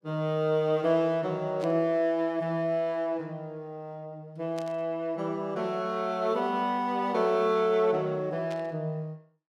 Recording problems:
burst of static; at 1.5 s, at 4.5 s and at 8.5 s; peak -12 dB vs average level

